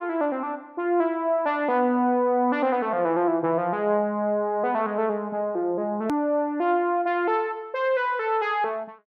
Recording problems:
click at an edit; at 6 s

